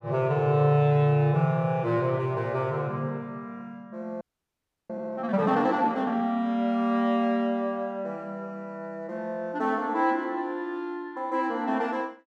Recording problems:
audio freezing; at 4 s for 0.5 s

